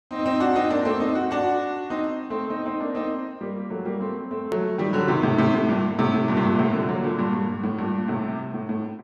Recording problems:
edit click; at 4.5 s

